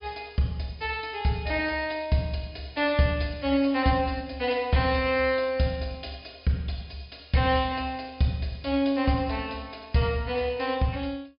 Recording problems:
treble cut off; nothing above 5.5 kHz

